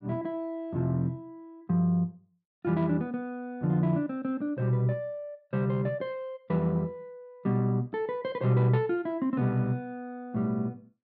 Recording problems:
none

